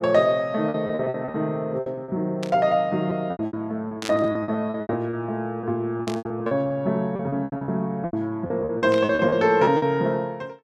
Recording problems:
packet loss; 17% of the sound replaced, filled with repeated pitch periods
burst of static; 4 times, first at 2.5 s; peak -3 dB vs average level

